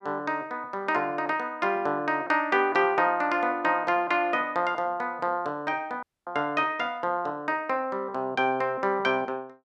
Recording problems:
audio cutting out; at 6 s

